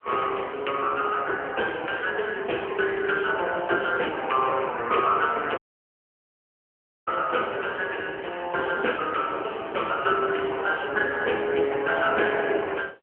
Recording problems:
phone line; 320 Hz to 3.1 kHz, AMR-NB
audio cutting out; at 5.5 s for 1.5 s

